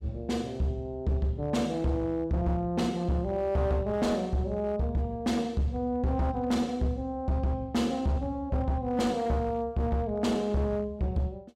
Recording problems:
distortion; hard clipping, signal-to-distortion ratio 11 dB

